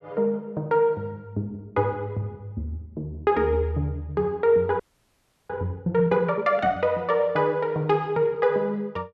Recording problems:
frozen audio; at 5 s for 0.5 s

